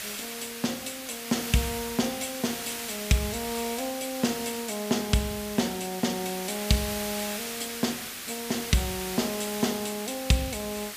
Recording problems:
background hiss; slope +1 dB per octave, SNR 5 dB

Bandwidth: 15 kHz